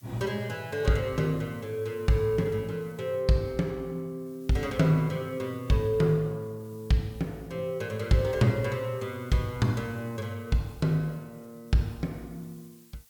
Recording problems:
background hiss; slope +2 dB per octave, SNR 27 dB

